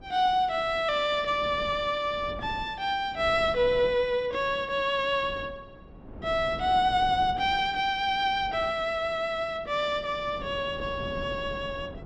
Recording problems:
wind noise; below 380 Hz, SNR 17 dB

